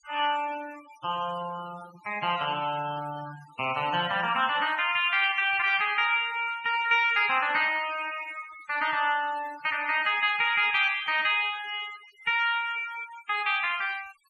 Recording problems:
denoising artefacts; signal-to-artefact ratio 18 dB

